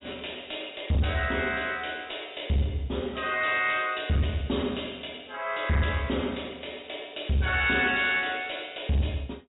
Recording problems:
treble cut off; nothing above 4 kHz
distorted audio; soft clipping, signal-to-distortion ratio 11 dB

